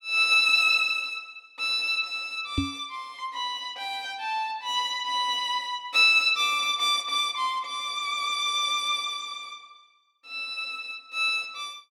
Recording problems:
microphone bump; at 2.5 s; peak +1 dB vs average level

